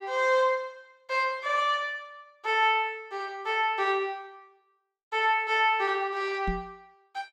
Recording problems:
knock on the microphone; at 6.5 s; peak -2 dB vs average level

